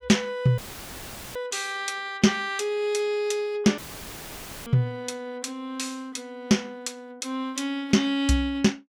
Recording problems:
audio cutting out; at 0.5 s for 1 s and at 4 s for 1 s; filled with static

